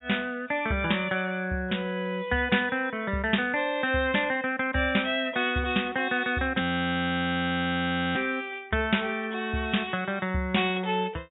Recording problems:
treble cut off; nothing above 3.7 kHz
frozen audio; at 6.5 s for 1.5 s

